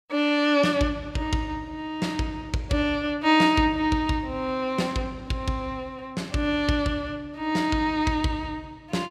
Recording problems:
none

